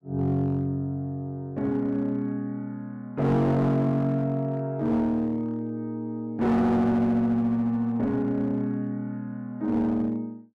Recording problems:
distortion; hard clipping, uneven, signal-to-distortion ratio 10 dB

